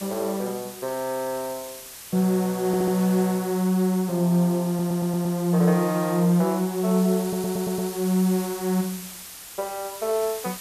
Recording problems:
background hiss; slope +1 dB per octave, SNR 14 dB
audio stuttering; at 2.5 s, at 4.5 s and at 7 s

